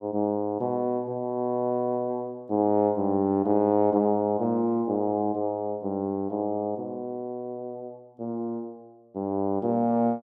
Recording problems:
none

